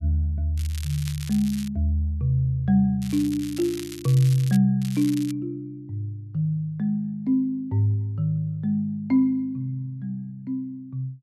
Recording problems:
crackle; from 0.5 to 1.5 s, from 3 to 4.5 s and at 5 s; loose cable, SNR 16 dB

